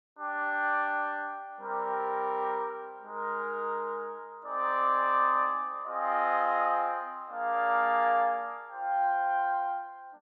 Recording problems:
none

